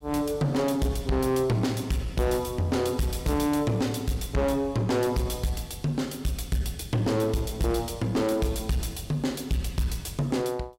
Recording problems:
distortion; soft clipping, signal-to-distortion ratio 8 dB

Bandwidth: 16 kHz